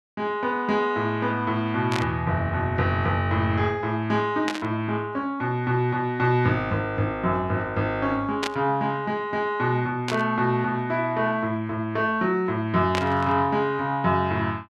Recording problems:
burst of static; 5 times, first at 2 s; peak +1 dB vs average level

